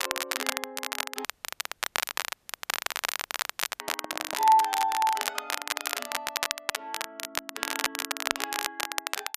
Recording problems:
crackling; vinyl, SNR 2 dB
audio cutting out; at 1.5 s for 2.5 s
handling noise; at 4 s; peak -3 dB vs average level

